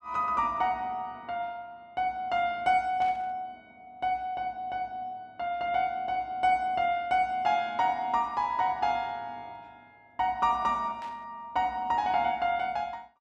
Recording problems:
static burst; at 3 s and at 11 s; peak -16 dB vs average level

